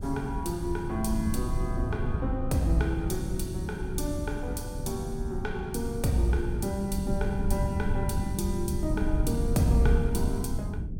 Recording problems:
low-frequency rumble; below 120 Hz, SNR 1 dB

